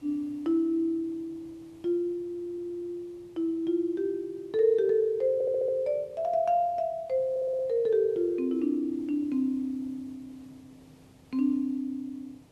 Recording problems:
background hiss; SNR 29 dB
audio stuttering; at 2 s, at 5.5 s and at 7.5 s

